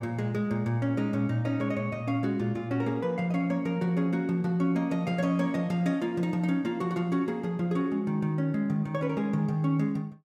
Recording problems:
none

